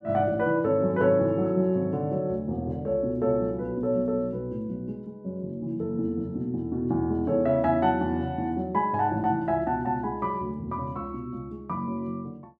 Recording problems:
none

